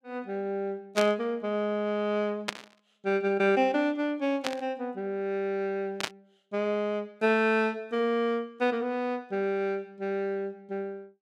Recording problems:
static burst; 4 times, first at 1 s; peak +4 dB vs average level

